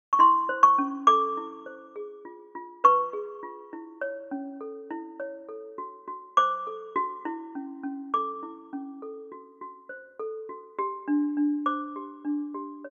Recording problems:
none

